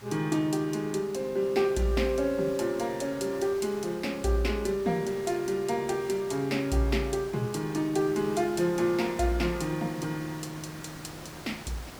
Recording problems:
hiss; slope -4 dB per octave, SNR 17 dB

